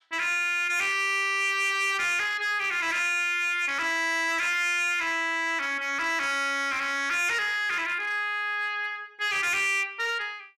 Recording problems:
distortion; hard clipping, signal-to-distortion ratio 11 dB

